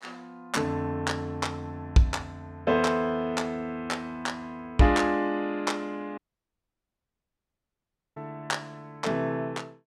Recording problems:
audio cutting out; at 6 s for 2 s

